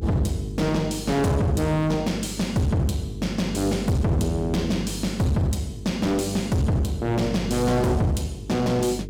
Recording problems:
distorted audio; hard clipping, uneven, signal-to-distortion ratio 5 dB
hum; 50 Hz, harmonics up to 450 Hz, SNR 11 dB

